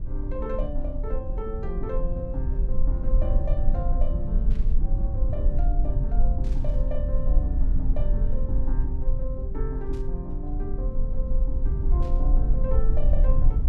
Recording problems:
rumble; below 48 Hz, strongest tone 18 Hz, SNR -9 dB
static burst; 4 times, first at 4.5 s; peak -12 dB vs average level

